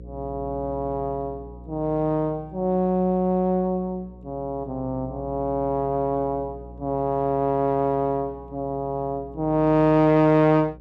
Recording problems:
hum; 60 Hz, harmonics up to 540 Hz, SNR 19 dB

